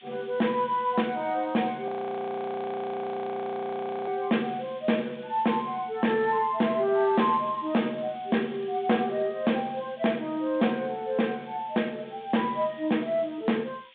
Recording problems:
phone line; 190 Hz to 3.6 kHz, G.726
distortion; soft clipping, signal-to-distortion ratio 11 dB
background hiss; SNR 26 dB
frozen audio; at 2 s for 2 s

